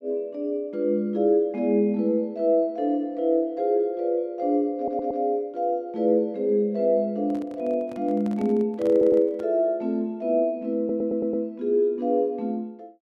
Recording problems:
stutter; at 5 s, at 9 s and at 11 s
microphone handling noise; from 7.5 to 9.5 s; peak -12 dB vs average level

